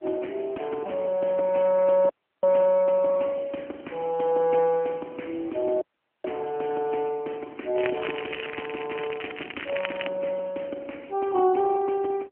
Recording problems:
phone line; 260 Hz to 3.1 kHz, AMR-NB
audio cutting out; at 2 s and at 6 s
crackling; from 8 to 10 s; loose cable, SNR 10 dB

